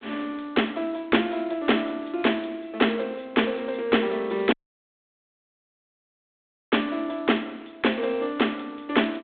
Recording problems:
telephone audio; 240 Hz to 3.6 kHz, G.726
audio cutting out; at 4.5 s for 2 s

